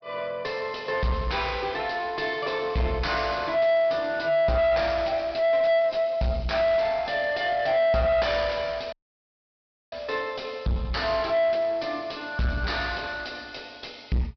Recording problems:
low-pass filter; nothing above 5.5 kHz
distorted audio; soft clipping, signal-to-distortion ratio 6 dB
audio cutting out; at 9 s for 1 s

